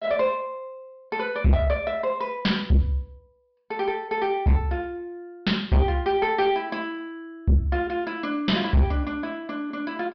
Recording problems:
low-pass filter; nothing above 5.5 kHz
distorted audio; soft clipping, signal-to-distortion ratio 7 dB

